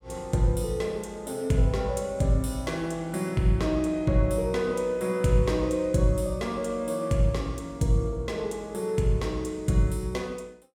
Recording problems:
none

